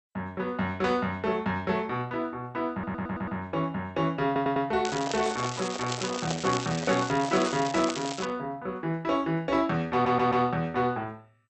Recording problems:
codec artefacts; MP2, log-spectral distance 5 dB
audio stuttering; at 2.5 s, at 4.5 s and at 10 s
microphone handling noise; from 5 to 8.5 s; peak -2 dB vs average level
crackle; from 5 to 8.5 s; loose cable, SNR 9 dB

